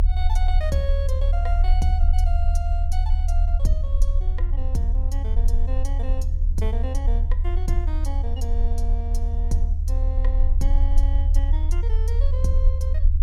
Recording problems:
low-frequency rumble; below 72 Hz, strongest tone 34 Hz, SNR -11 dB
wind noise; below 110 Hz, SNR 7 dB

